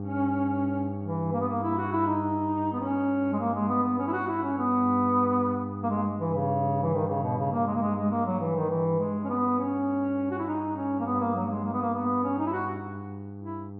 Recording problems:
electrical hum; 50 Hz, harmonics up to 900 Hz, SNR 9 dB

